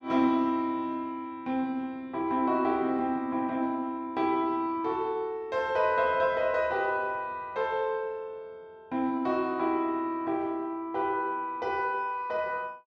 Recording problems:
none

